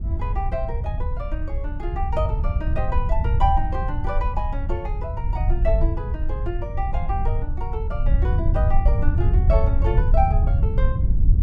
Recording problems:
rumble; below 80 Hz, SNR -6 dB

